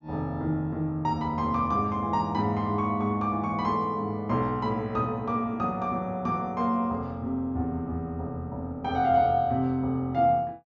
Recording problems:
treble cut off; nothing above 7.3 kHz

